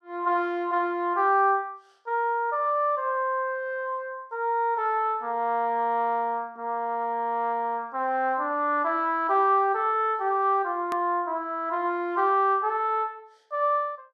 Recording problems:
hard cut with a click; at 11 s

